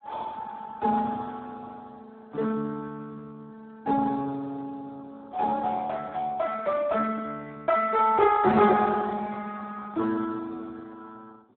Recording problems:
phone line; 170 Hz to 2.6 kHz, Speex

